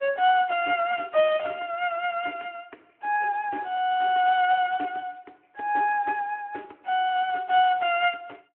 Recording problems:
telephone audio; 260 Hz to 3.3 kHz, Speex

